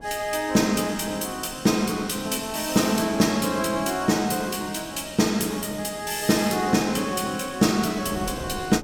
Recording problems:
wind noise; below 450 Hz, SNR 21 dB

